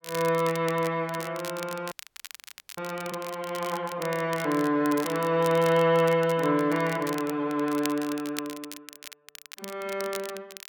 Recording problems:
crackling; vinyl, SNR 15 dB
frozen audio; at 2 s for 1 s

